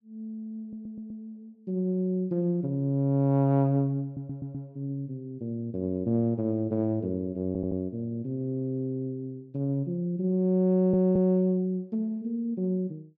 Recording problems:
audio stuttering; 4 times, first at 0.5 s

